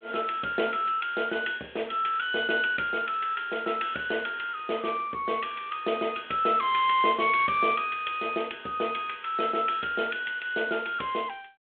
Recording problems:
telephone audio; 240 Hz to 3.5 kHz, G.726

